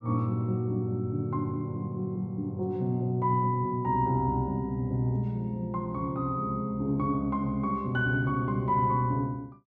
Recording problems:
none

